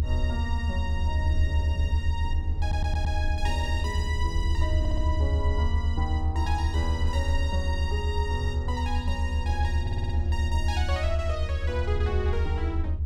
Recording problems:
rumble; below 80 Hz, SNR -6 dB
stutter; at 2.5 s, at 5 s and at 10 s

